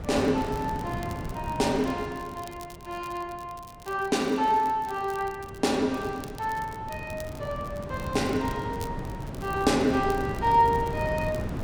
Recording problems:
wind on the microphone; below 360 Hz, SNR 8 dB
crackle; vinyl, SNR 22 dB

